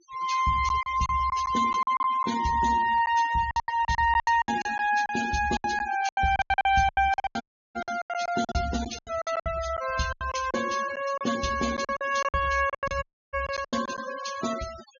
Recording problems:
treble missing; nothing above 6.7 kHz
denoising artefacts; signal-to-artefact ratio 14 dB
packet loss; 16% of the sound replaced, filled with silence
audio cutting out; at 7.5 s and at 13 s

